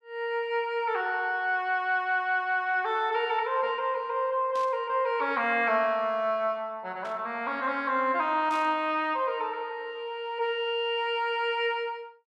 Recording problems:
burst of static; at 4.5 s, at 7 s and at 8.5 s; peak -14 dB vs average level

